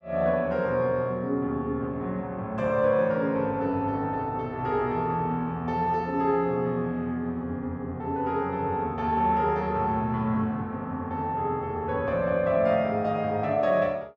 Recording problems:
none

